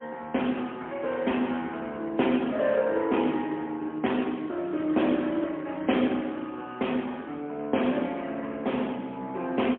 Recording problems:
phone line; 170 Hz to 3.3 kHz, AMR-NB, then MP3

